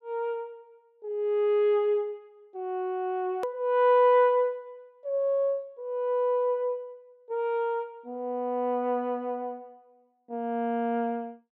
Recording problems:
edit click; at 3.5 s

